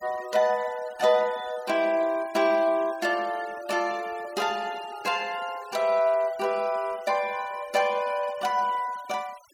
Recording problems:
noise reduction artefacts; signal-to-artefact ratio 20 dB

